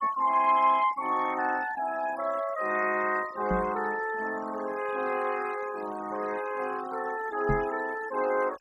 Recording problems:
noise reduction artefacts; signal-to-artefact ratio 17 dB
microphone bump; at 3.5 s and at 7.5 s; peak +2 dB vs average level

